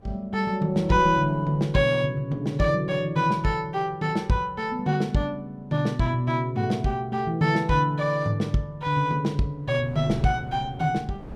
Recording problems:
wind on the microphone; below 340 Hz, SNR 19 dB

